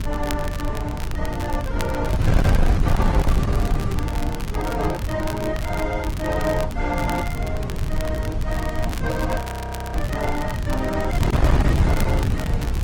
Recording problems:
lossy compression; Vorbis, then Opus, log-spectral distance 2 dB, nothing above 16.6 kHz
distortion; hard clipping, uneven, signal-to-distortion ratio 7 dB
wind on the microphone; below 140 Hz, SNR -3 dB
crackling; vinyl, SNR 10 dB
frozen audio; at 9.5 s for 0.5 s

